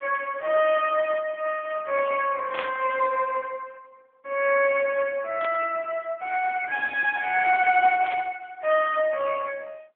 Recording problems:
telephone audio; 430 Hz to 3.3 kHz, AMR-NB
static burst; at 2.5 s, at 5.5 s and at 8 s; peak -5 dB vs average level

